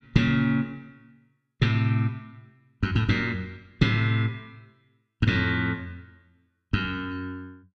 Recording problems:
none

